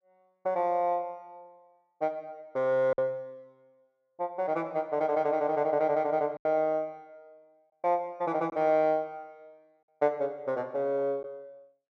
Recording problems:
lost packets; 1.9% of the sound replaced, filled with silence

